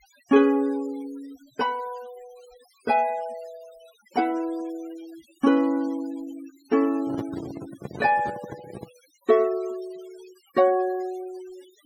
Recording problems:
noise reduction artefacts; signal-to-artefact ratio 24 dB
microphone handling noise; from 7 to 9 s; peak -4 dB vs average level

